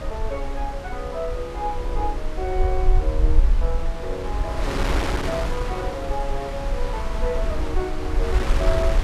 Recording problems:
rumble; below 50 Hz, SNR -2 dB
wind on the microphone; below 1.8 kHz, SNR 3 dB

